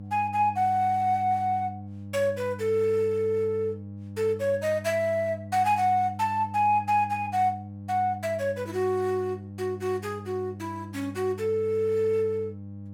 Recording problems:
hum; 50 Hz, harmonics up to 600 Hz, SNR 13 dB

